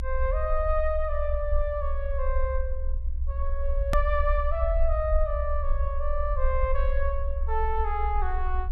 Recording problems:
low-frequency rumble; below 62 Hz, strongest tone 20 Hz, SNR 0 dB
hard cut with a click; at 4 s

